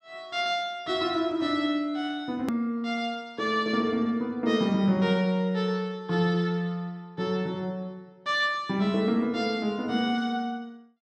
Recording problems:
edit click; at 2.5 s

